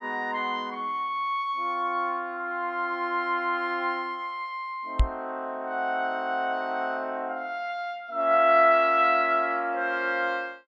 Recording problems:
knock on the microphone; at 5 s; peak +6 dB vs average level

